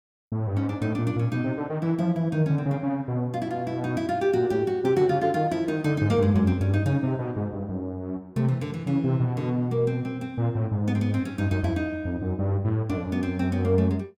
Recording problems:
none

